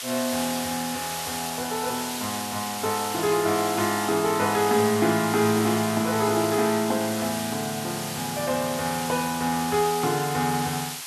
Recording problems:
background hiss; slope +2 dB per octave, SNR 6 dB

